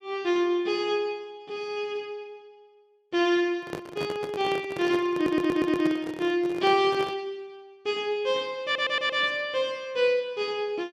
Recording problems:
microphone handling noise; from 3.5 to 7 s; peak -3 dB vs average level
audio stuttering; at 5 s and at 8.5 s

